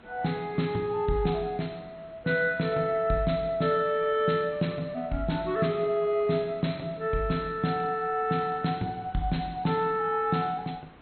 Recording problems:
codec artefacts; MP2, log-spectral distance 3 dB, nothing above 4.2 kHz
background hiss; SNR 24 dB

